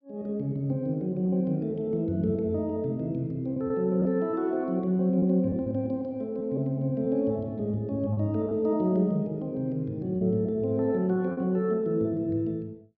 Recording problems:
lost packets; 4% of the sound replaced, filled with repeated pitch periods

